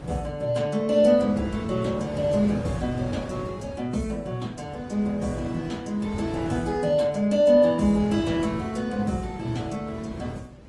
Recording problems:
codec artefacts; MP3, then Opus, log-spectral distance 2 dB
wind on the microphone; below 400 Hz, SNR 12 dB

